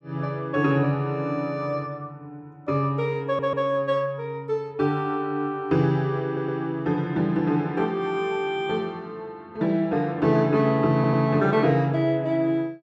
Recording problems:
stutter; at 3.5 s, at 6.5 s and at 11 s

